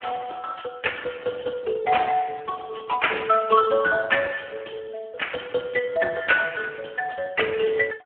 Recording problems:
phone line; 220 Hz to 3.1 kHz, Speex

